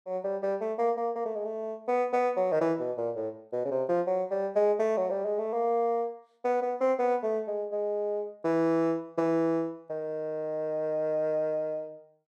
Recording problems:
none

